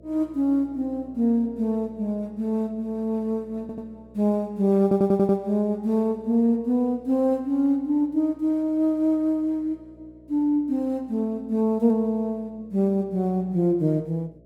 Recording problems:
electrical hum; 60 Hz, harmonics up to 660 Hz, SNR 27 dB
audio stuttering; at 3.5 s and at 5 s

